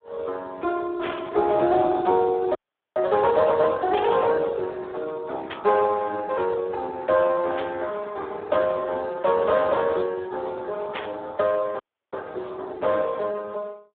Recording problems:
phone line; 260 Hz to 2.6 kHz, Speex
burst of static; 5 times, first at 1 s; peak -5 dB vs average level
audio freezing; at 2.5 s and at 12 s

